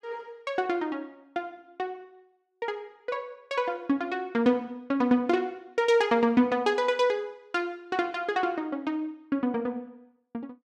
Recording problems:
none

